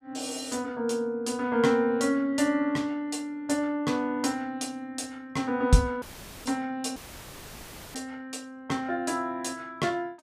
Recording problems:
audio cutting out; at 6 s and at 7 s for 1 s; filled with static

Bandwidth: 15 kHz